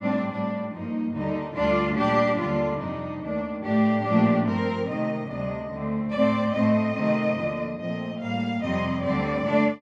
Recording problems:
none

